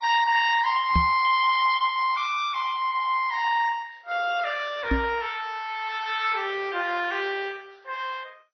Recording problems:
codec artefacts; MP2, then AAC, log-spectral distance 5 dB, nothing above 5.2 kHz
microphone bump; at 1 s and at 5 s; peak +4 dB vs average level

